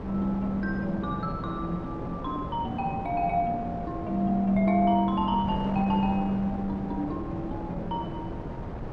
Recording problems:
wind on the microphone; below 530 Hz, SNR 8 dB

